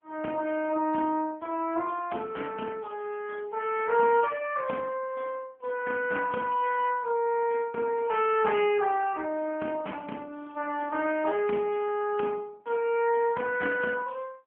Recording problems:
phone line; 220 Hz to 3.1 kHz, AMR-NB

